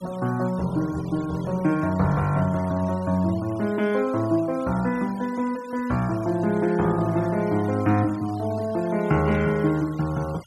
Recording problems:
denoising artefacts; signal-to-artefact ratio 21 dB

